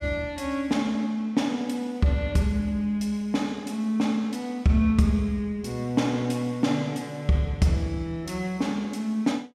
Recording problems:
none

